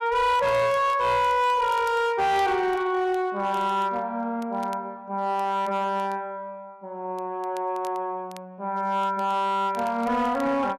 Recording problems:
distorted audio; hard clipping, signal-to-distortion ratio 11 dB
crackling; vinyl, SNR 28 dB

